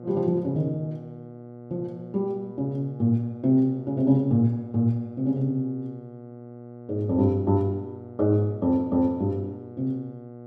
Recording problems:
hum; 60 Hz, harmonics up to 1.3 kHz, SNR 17 dB

